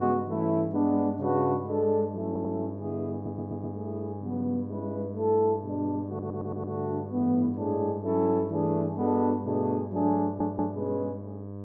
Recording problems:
hum; 50 Hz, harmonics up to 1.1 kHz, SNR 10 dB
stutter; 4 times, first at 2.5 s

